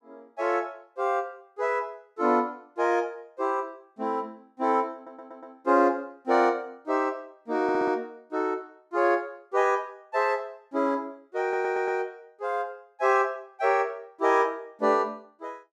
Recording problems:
stutter; at 5 s, at 7.5 s and at 11 s

